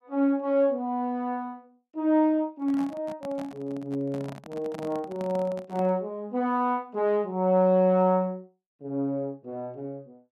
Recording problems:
microphone handling noise; from 2.5 to 6 s; peak -10 dB vs average level

